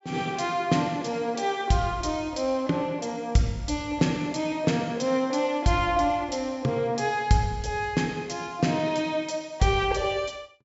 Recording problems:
treble cut off; nothing above 8 kHz

